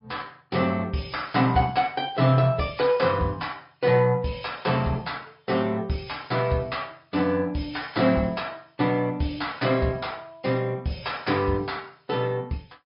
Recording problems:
low-pass filter; nothing above 5.2 kHz
codec artefacts; MP3, log-spectral distance 4 dB

